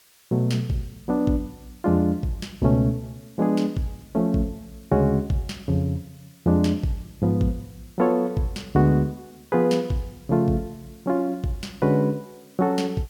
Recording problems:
background hiss; slope +1 dB per octave, SNR 30 dB

